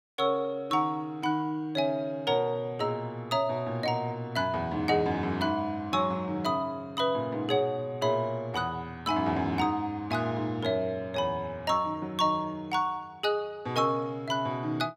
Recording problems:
none

